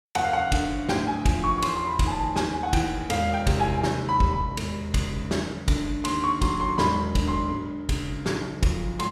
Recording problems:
none

